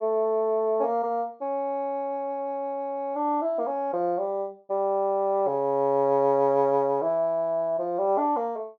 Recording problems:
treble cut off; nothing above 7 kHz

